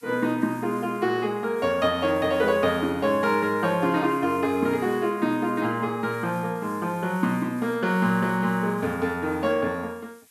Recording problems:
hiss; slope +3 dB per octave, SNR 26 dB

